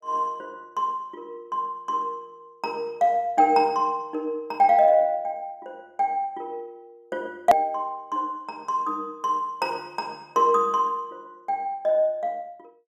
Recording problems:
edit click; at 7.5 s

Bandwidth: 14.5 kHz